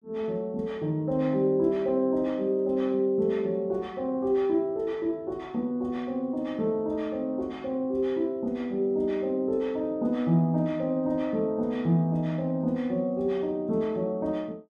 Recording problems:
none

